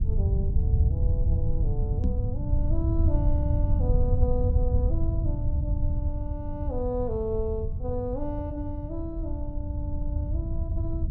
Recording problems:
low-frequency rumble; below 94 Hz, SNR -7 dB
knock on the microphone; at 2 s; peak +8 dB vs average level

